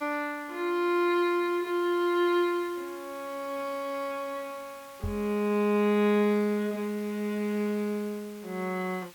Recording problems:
background hiss; SNR 22 dB
microphone bump; at 5 s; peak -3 dB vs average level

